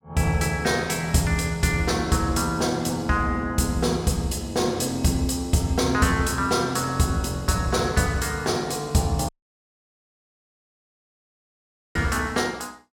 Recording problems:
dropout; at 9.5 s for 2.5 s

